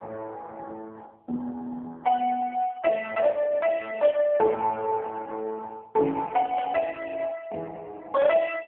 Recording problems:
phone line; 320 Hz to 3 kHz, AMR-NB
static burst; at 4 s and at 6.5 s; peak -17 dB vs average level

